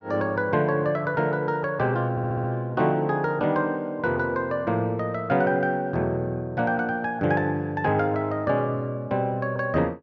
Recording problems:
stutter; at 2 s

